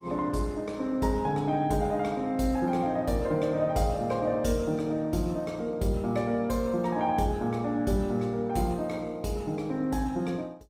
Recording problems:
codec artefacts; Opus, log-spectral distance 2 dB

